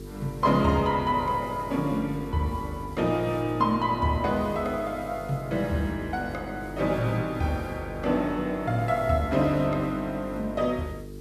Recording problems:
electrical hum; 50 Hz, harmonics up to 450 Hz, SNR 14 dB
background hiss; slope -1 dB per octave, SNR 27 dB

